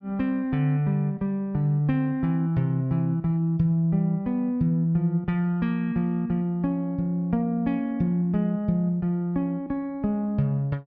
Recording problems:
low-pass filter; nothing above 6.5 kHz

